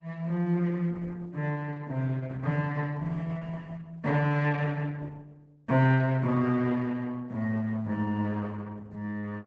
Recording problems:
codec artefacts; Opus, log-spectral distance 2 dB

